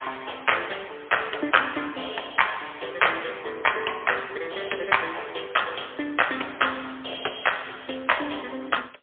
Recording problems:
phone line; 340 Hz to 3.4 kHz, AMR-NB, then MP3

